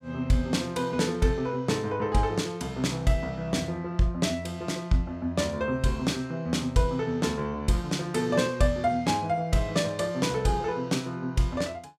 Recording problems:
none

